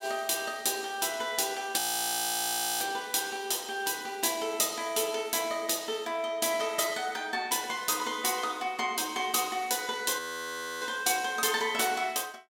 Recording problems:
frozen audio; at 2 s for 1 s and at 10 s for 0.5 s

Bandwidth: 16.5 kHz